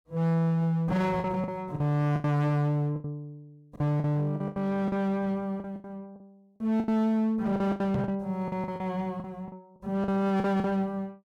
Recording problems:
distorted audio; hard clipping, signal-to-distortion ratio 7 dB
lost packets; 12% of the sound replaced, filled with the last packet
knock on the microphone; at 8 s; peak +1 dB vs average level

